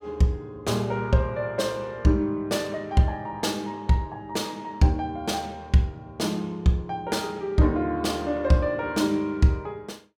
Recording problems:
none

